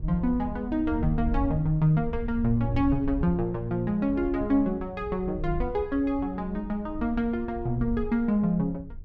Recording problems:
wind on the microphone; below 76 Hz, SNR 10 dB

